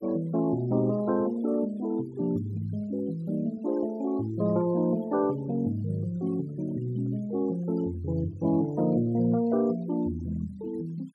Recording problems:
denoising artefacts; signal-to-artefact ratio 23 dB

